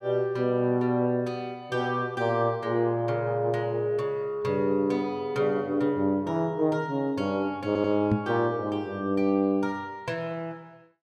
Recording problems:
audio stuttering; at 7.5 s
knock on the microphone; at 8 s; peak +4 dB vs average level

